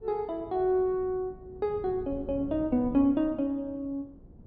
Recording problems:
wind on the microphone; below 240 Hz, SNR 17 dB

